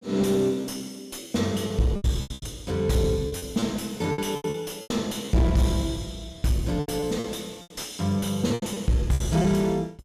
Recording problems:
distorted audio; soft clipping, signal-to-distortion ratio 10 dB
lost packets; 12% of the sound replaced, filled with repeated pitch periods

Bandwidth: 14.5 kHz